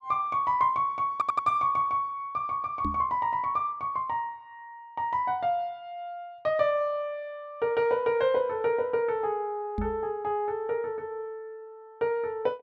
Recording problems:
stutter; at 1 s
knock on the microphone; at 3 s and at 10 s; peak 0 dB vs average level

